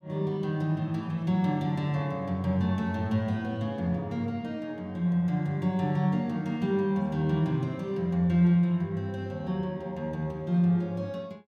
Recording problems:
none

